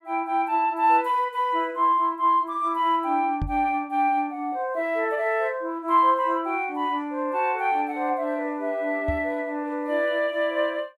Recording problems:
knock on the microphone; at 3.5 s and at 9 s; peak -1 dB vs average level

